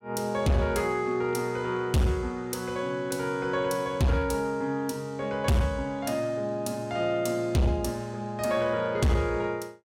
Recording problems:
distorted audio; hard clipping, signal-to-distortion ratio 7 dB

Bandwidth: 16.5 kHz